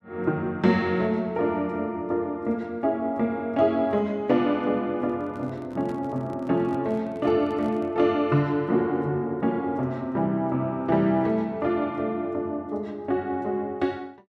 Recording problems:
microphone handling noise; from 5 to 8 s; peak -10 dB vs average level

